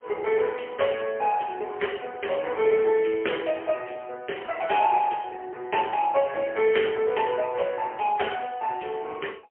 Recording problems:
phone line; 340 Hz to 3.1 kHz, AMR-NB, then MP3

